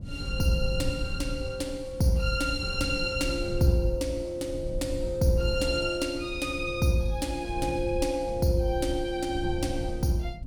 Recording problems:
rumble; below 110 Hz, SNR 9 dB

